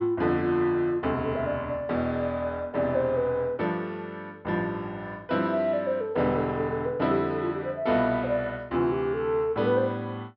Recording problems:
low-pass filter; nothing above 5.5 kHz

